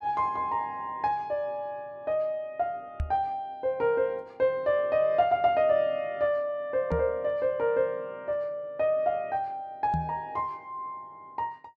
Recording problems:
microphone bump; at 3 s, at 7 s and at 10 s; peak +1 dB vs average level

